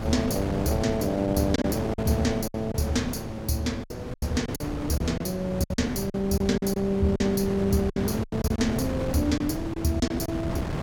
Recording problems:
wind noise; below 480 Hz, SNR 5 dB
lost packets; 9% of the sound replaced, filled with silence

